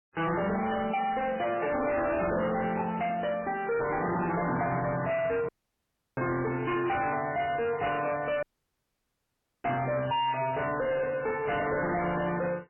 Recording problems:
lossy compression; MP3, log-spectral distance 5 dB, nothing above 2.9 kHz
distortion; hard clipping, signal-to-distortion ratio 6 dB
dropout; at 5.5 s for 0.5 s and at 8.5 s for 1 s

